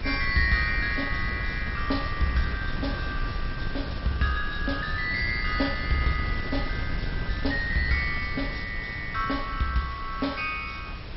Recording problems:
codec artefacts; MP2, log-spectral distance 6 dB, nothing above 4.9 kHz
mains hum; 60 Hz, harmonics up to 660 Hz, SNR 18 dB
background hiss; SNR 16 dB
wind noise; below 120 Hz, SNR 6 dB

